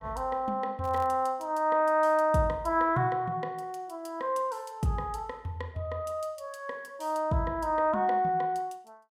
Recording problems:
crackling; at 1 s; loose cable, SNR 27 dB

